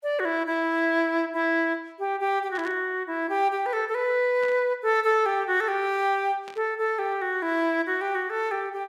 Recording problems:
static burst; at 2.5 s, at 4.5 s and at 6.5 s; peak -13 dB vs average level

